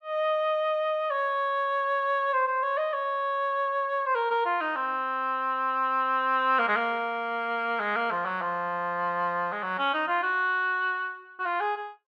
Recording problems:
none

